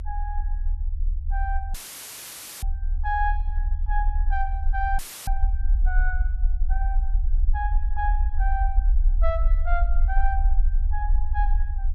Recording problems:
low-frequency rumble; below 46 Hz, strongest tone 30 Hz, SNR -6 dB
dropout; at 1.5 s for 1 s and at 5 s; filled with static

